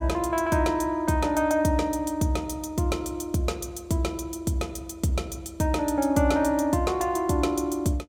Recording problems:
none

